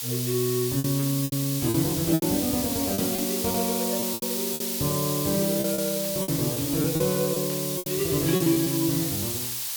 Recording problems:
background hiss; SNR 1 dB
lost packets; 10% of the sound replaced, filled with repeated pitch periods
static burst; at 1 s, at 6 s and at 7.5 s; peak -12 dB vs average level

